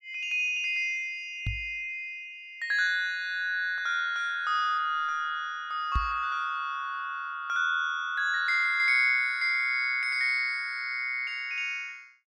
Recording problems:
knock on the microphone; at 1.5 s and at 6 s; peak +1 dB vs average level

